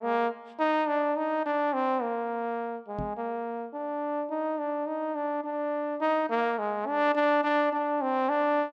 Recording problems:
knock on the microphone; at 3 s; peak -4 dB vs average level

